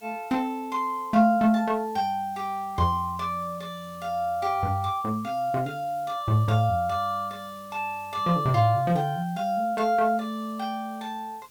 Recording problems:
background hiss; slope -1 dB per octave, SNR 26 dB

